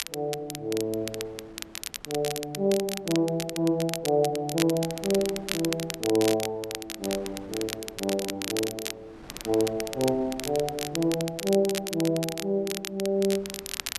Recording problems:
wind noise; below 1.1 kHz, SNR 23 dB
crackling; vinyl, SNR 7 dB

